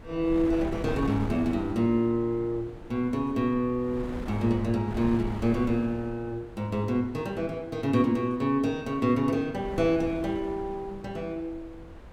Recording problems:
wind on the microphone; below 370 Hz, SNR 14 dB

